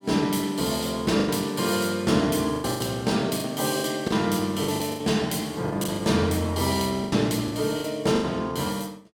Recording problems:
lost packets; 10% of the sound replaced, filled with the last packet

